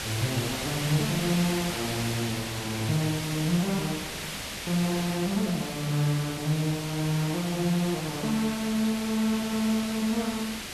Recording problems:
background hiss; slope -1 dB per octave, SNR 5 dB

